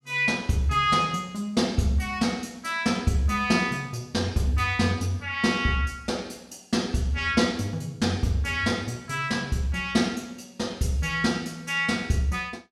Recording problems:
none

